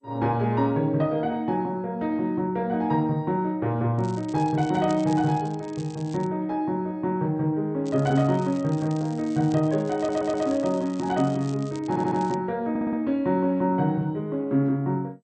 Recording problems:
lossy codec; MP2, log-spectral distance 2 dB
crackling; from 4 to 6.5 s and from 8 to 12 s; loose cable, SNR 23 dB
audio stuttering; at 10 s, at 12 s and at 13 s

